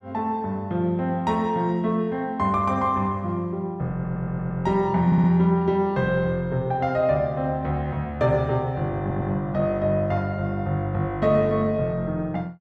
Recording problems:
audio stuttering; at 4 s, at 5 s and at 9 s

